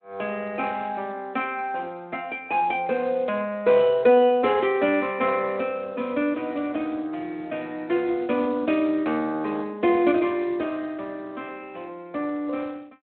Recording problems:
phone line; 220 Hz to 3.4 kHz, Speex

